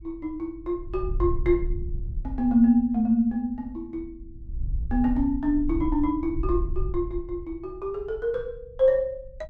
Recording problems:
wind on the microphone; below 64 Hz, SNR 8 dB

